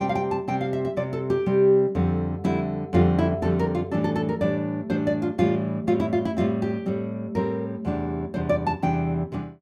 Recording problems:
none

